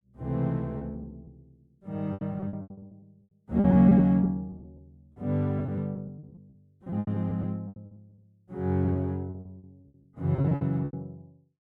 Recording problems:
lost packets; 17% of the sound replaced, filled with repeated pitch periods

